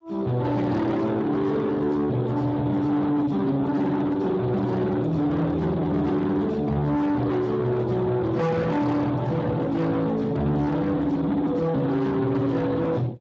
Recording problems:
codec artefacts; Speex, log-spectral distance 3 dB
distorted audio; soft clipping, signal-to-distortion ratio 7 dB

